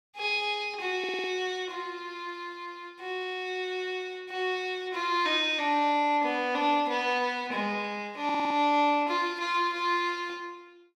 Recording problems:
audio stuttering; at 1 s and at 8 s

